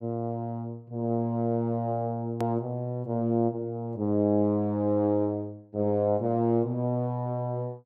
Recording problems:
edit click; at 2.5 s

